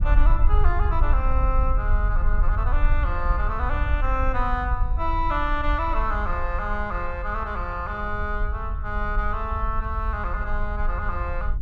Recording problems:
rumble; below 54 Hz, SNR -1 dB

